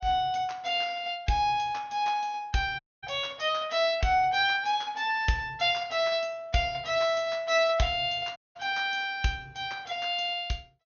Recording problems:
treble missing; nothing above 6.6 kHz
dropout; at 3 s and at 8.5 s

